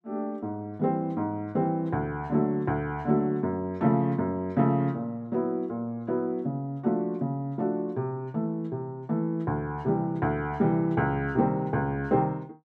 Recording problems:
none

